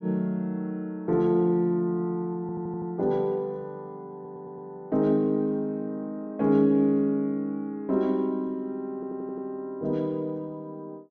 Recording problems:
treble missing; nothing above 7 kHz
audio stuttering; at 2.5 s, at 4 s and at 9 s

